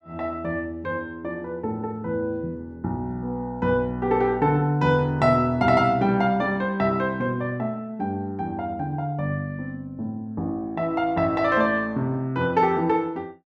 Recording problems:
none

